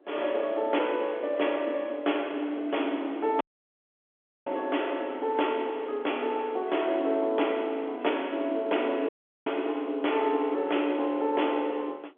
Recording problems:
telephone audio; 260 Hz to 3.5 kHz, G.711
wind on the microphone; below 560 Hz, SNR 20 dB
audio cutting out; at 3.5 s for 1 s and at 9 s

